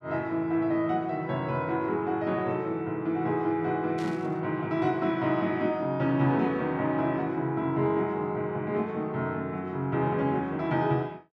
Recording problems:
burst of static; at 4 s; peak -14 dB vs average level

